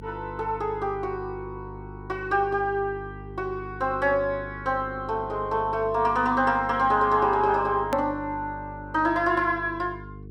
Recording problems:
electrical hum; 50 Hz, harmonics up to 450 Hz, SNR 16 dB
click at an edit; at 8 s

